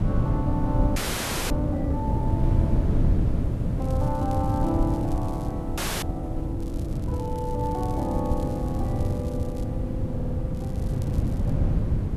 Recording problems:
background hiss; slope -1 dB per octave, SNR 27 dB
wind on the microphone; below 160 Hz, SNR -5 dB
frozen audio; at 1 s for 0.5 s and at 6 s
crackling; from 4 to 5.5 s, from 6.5 to 9.5 s and at 11 s; loose cable, SNR 20 dB
stutter; at 10 s

